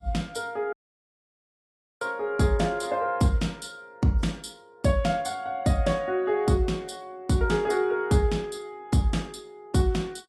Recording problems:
lossy compression; AAC, log-spectral distance 2 dB, nothing above 11.3 kHz
dropout; at 0.5 s for 1.5 s

